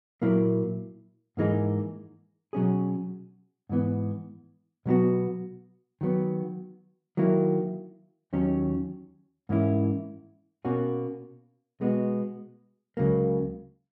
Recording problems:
none

